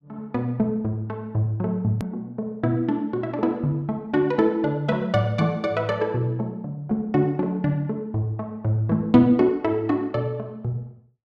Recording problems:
hard cut with a click; at 2 s

